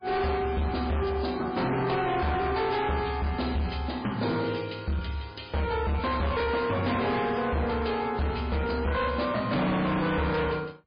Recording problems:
lossy codec; MP3, log-spectral distance 5 dB, nothing above 4.6 kHz
distorted audio; hard clipping, signal-to-distortion ratio 6 dB

